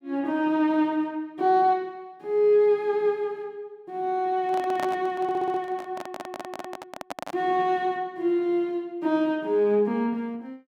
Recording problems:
handling noise; from 4.5 to 7.5 s; peak -3 dB vs average level
audio stuttering; at 5 s and at 6 s

